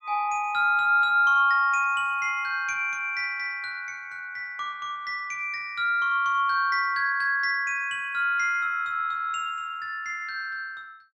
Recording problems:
none

